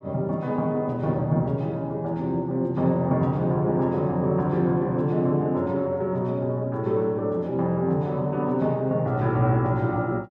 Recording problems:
none

